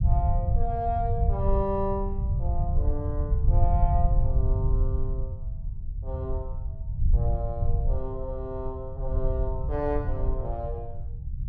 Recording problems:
low-frequency rumble; below 86 Hz, SNR -4 dB

